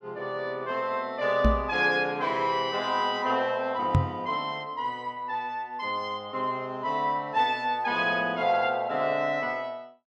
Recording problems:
knock on the microphone; at 1.5 s and at 4 s; peak +8 dB vs average level

